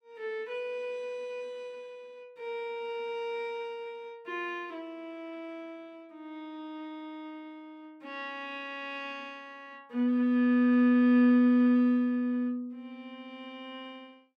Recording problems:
none

